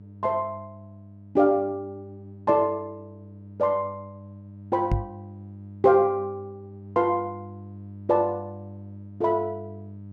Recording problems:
hum; 50 Hz, harmonics up to 600 Hz, SNR 17 dB
microphone thump; at 5 s; peak +3 dB vs average level

